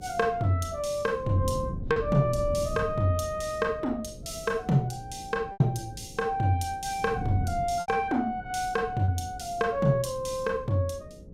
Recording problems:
mains hum; 60 Hz, harmonics up to 540 Hz, SNR 24 dB
wind noise; below 180 Hz, SNR 13 dB
lost packets; 2% of the sound replaced, filled with repeated pitch periods

